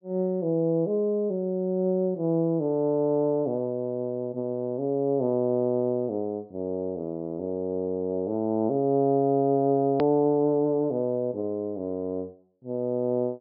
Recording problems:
low-pass filter; nothing above 5.5 kHz
hard cut with a click; at 10 s

